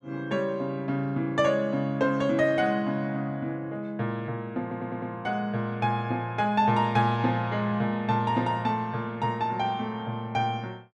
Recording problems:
stutter; at 4.5 s

